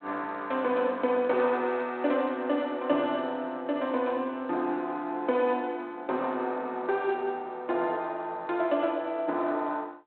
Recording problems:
telephone audio; 240 Hz to 3.6 kHz, G.726

